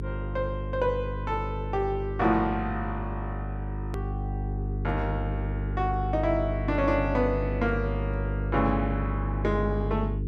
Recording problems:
hum; 50 Hz, harmonics up to 450 Hz, SNR 2 dB
hard cut with a click; at 4 s

